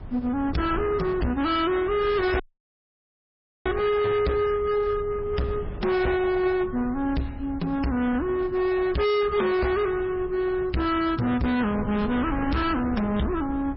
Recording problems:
codec artefacts; MP3, log-spectral distance 2 dB, nothing above 5.3 kHz
distorted audio; hard clipping, uneven, signal-to-distortion ratio 7 dB
wind noise; below 250 Hz, SNR 13 dB
audio cutting out; at 2.5 s for 1.5 s

